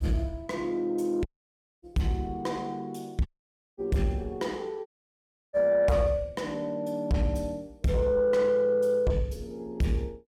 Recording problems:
distortion; soft clipping, signal-to-distortion ratio 11 dB
dropout; at 1.5 s for 0.5 s, at 3.5 s for 0.5 s and at 5 s for 0.5 s

